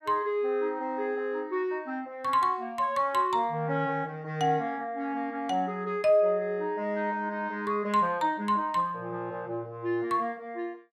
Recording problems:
none

